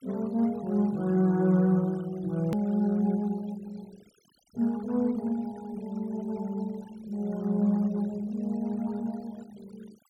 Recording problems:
denoising artefacts; signal-to-artefact ratio 24 dB
click at an edit; at 2.5 s

